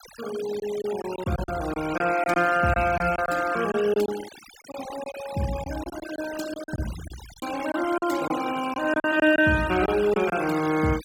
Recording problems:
denoising artefacts; signal-to-artefact ratio 13 dB
packet loss; 9% of the sound replaced, filled with silence

